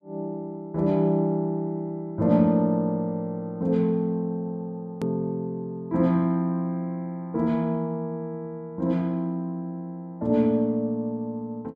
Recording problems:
click at an edit; at 5 s

